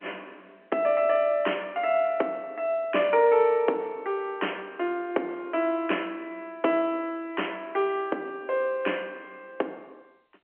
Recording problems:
phone line; 260 Hz to 3.2 kHz, G.711

